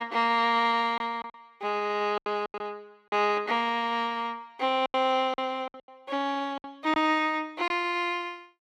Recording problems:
lost packets; 8% of the sound replaced, filled with silence

